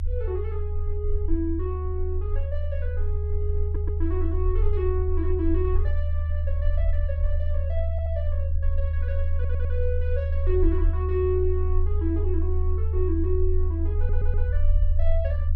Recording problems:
rumble; below 78 Hz, strongest tone 22 Hz, SNR -6 dB
stutter; 4 times, first at 3.5 s

